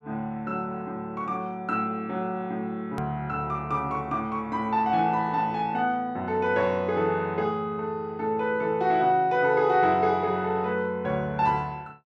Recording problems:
edit click; at 3 s

